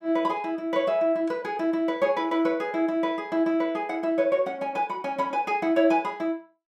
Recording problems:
none

